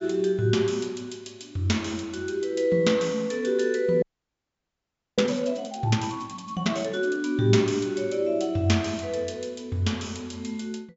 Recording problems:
low-pass filter; nothing above 8 kHz
audio freezing; at 4 s for 1 s

